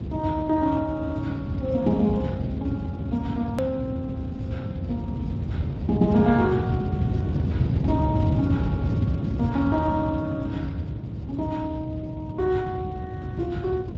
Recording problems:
lossy compression; Speex, log-spectral distance 2 dB, nothing above 13.3 kHz
low-frequency rumble; below 200 Hz, SNR 1 dB
hard cut with a click; at 3.5 s

